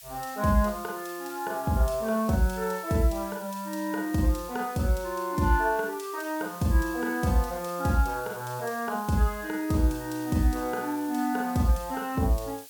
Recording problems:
hiss; slope +5 dB per octave, SNR 16 dB

